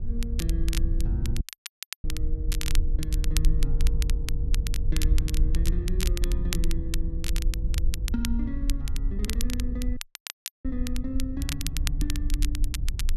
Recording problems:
wind noise; below 54 Hz, SNR -7 dB
crackling; vinyl, SNR 1 dB
dropout; at 1.5 s for 0.5 s and at 10 s for 0.5 s

